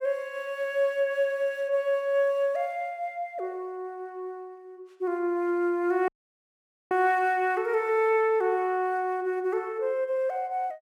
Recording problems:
dropout; at 6 s for 1 s

